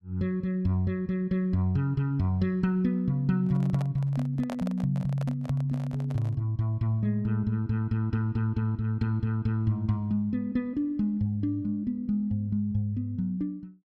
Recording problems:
handling noise; from 3.5 to 6.5 s; peak -7 dB vs average level

